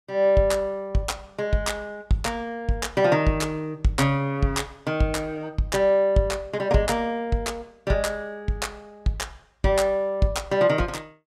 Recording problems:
none

